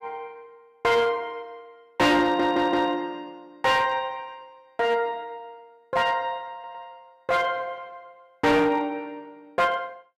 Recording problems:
distortion; hard clipping, uneven, signal-to-distortion ratio 10 dB
audio stuttering; at 2 s and at 6.5 s

